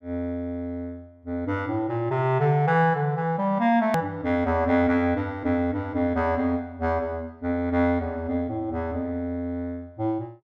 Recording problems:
hard cut with a click; at 4 s

